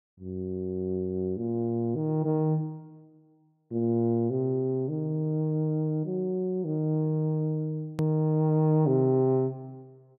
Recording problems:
hard cut with a click; at 8 s

